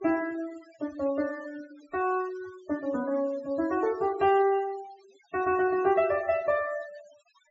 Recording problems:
low-pass filter; nothing above 8 kHz
noise reduction artefacts; signal-to-artefact ratio 20 dB

